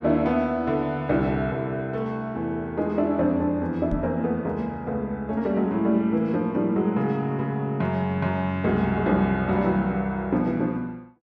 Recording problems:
knock on the microphone; at 4 s; peak -1 dB vs average level

